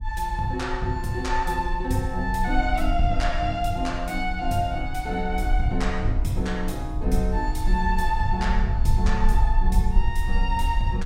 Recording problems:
rumble; below 50 Hz, SNR 2 dB

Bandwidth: 16 kHz